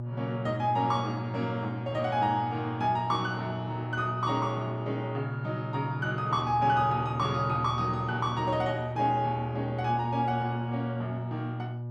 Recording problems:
mains hum; 60 Hz, harmonics up to 600 Hz, SNR 6 dB

